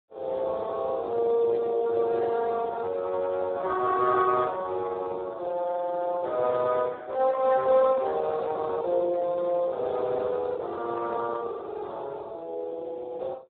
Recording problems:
phone line; 320 Hz to 2.1 kHz, Speex

